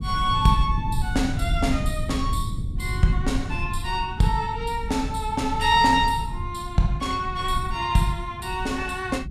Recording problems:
low-frequency rumble; below 110 Hz, SNR 7 dB

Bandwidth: 14.5 kHz